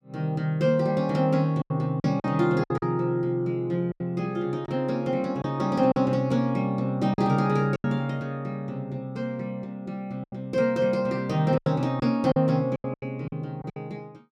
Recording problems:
lost packets; 7% of the sound replaced, filled with silence

